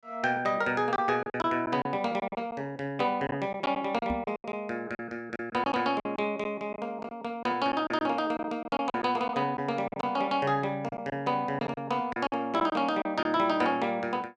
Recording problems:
lost packets; 9% of the sound replaced, filled with silence
microphone thump; at 4 s; peak -1 dB vs average level

